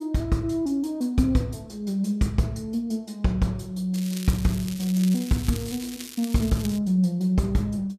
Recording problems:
crackle; from 4 to 7 s; loose cable, SNR 13 dB

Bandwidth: 14.5 kHz